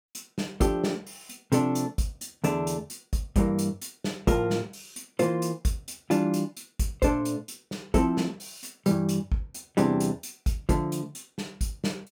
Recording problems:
none

